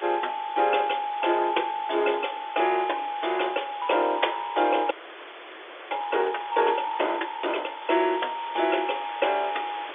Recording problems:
phone line; 300 Hz to 3.6 kHz, G.711
hiss; SNR 14 dB
audio freezing; at 5 s for 1 s

